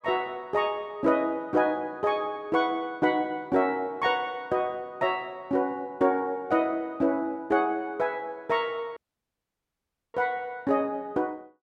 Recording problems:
audio cutting out; at 9 s for 1 s

